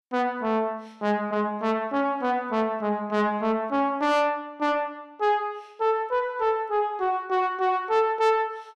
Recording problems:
distortion; soft clipping, signal-to-distortion ratio 11 dB

